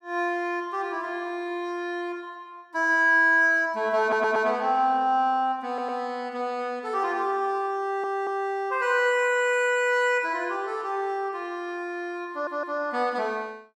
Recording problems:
audio stuttering; 4 times, first at 4 s

